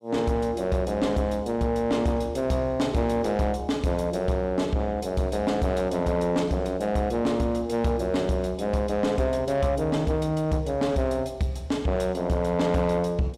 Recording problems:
distorted audio; soft clipping, signal-to-distortion ratio 11 dB

